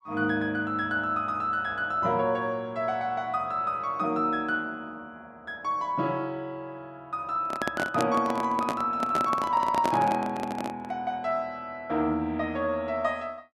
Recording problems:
microphone handling noise; from 7.5 to 11 s; peak +3 dB vs average level

